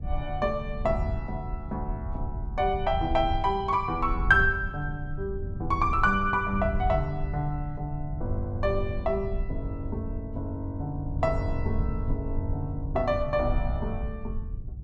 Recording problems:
rumble; below 90 Hz, SNR 6 dB

